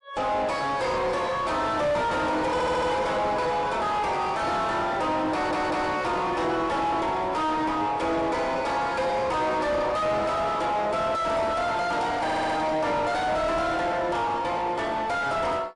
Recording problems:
codec artefacts; MP3, log-spectral distance 2 dB
distortion; soft clipping, signal-to-distortion ratio 4 dB
audio stuttering; at 2.5 s, at 5.5 s and at 12 s

